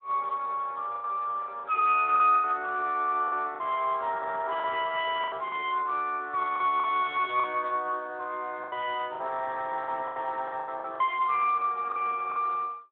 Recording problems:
telephone audio; 320 Hz to 3.3 kHz, Speex
packet loss; 9% of the sound replaced, filled with the last packet

